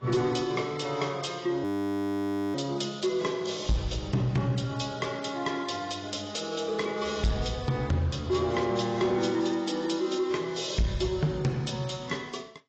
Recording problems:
lossy codec; AAC, log-spectral distance 4 dB, nothing above 18.3 kHz
distortion; soft clipping, signal-to-distortion ratio 12 dB
frozen audio; at 1.5 s for 1 s

